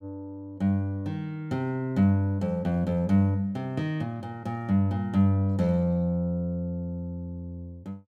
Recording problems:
none

